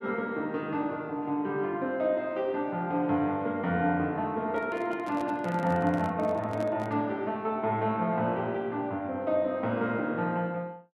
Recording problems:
microphone handling noise; from 4.5 to 7 s; peak -6 dB vs average level

